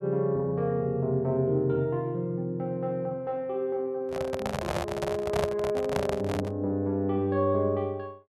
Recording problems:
handling noise; from 4 to 6.5 s; peak +4 dB vs average level

